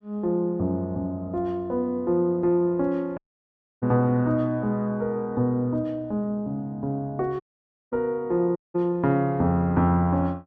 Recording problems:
audio cutting out; at 3 s for 0.5 s, at 7.5 s for 0.5 s and at 8.5 s

